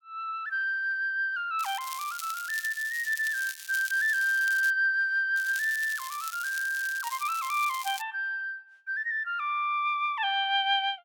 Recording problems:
crackle; from 1.5 to 4.5 s and from 5.5 to 8 s; loose cable, SNR 12 dB

